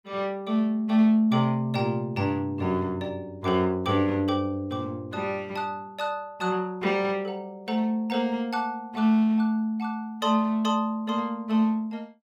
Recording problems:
none

